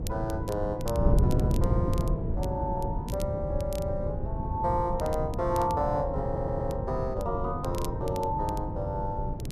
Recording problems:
wind noise; below 170 Hz, SNR 0 dB
crackle; vinyl, SNR 17 dB
stutter; at 6.5 s

